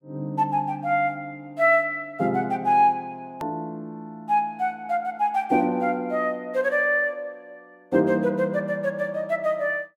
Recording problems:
edit click; at 3.5 s

